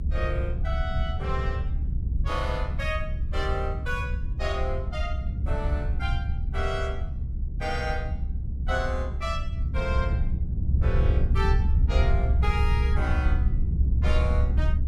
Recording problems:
low-frequency rumble; below 80 Hz, SNR -6 dB

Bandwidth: 15 kHz